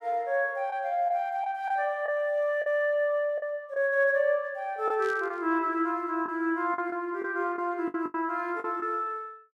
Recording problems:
lost packets; 6% of the sound replaced, filled with the last packet
burst of static; at 5 s; peak -14 dB vs average level

